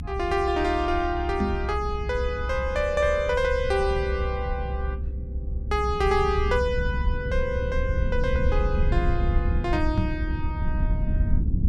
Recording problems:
low-frequency rumble; below 82 Hz, SNR 2 dB
microphone thump; at 1.5 s and at 10 s; peak +4 dB vs average level

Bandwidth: 13 kHz